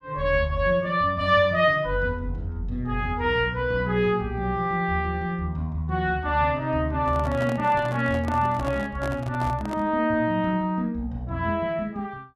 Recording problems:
handling noise; from 7 to 10 s; peak -7 dB vs average level

